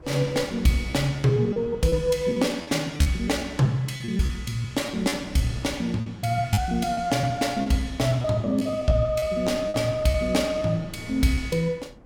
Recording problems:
wind on the microphone; below 380 Hz, SNR 21 dB
packet loss; 10% of the sound replaced, filled with repeated pitch periods

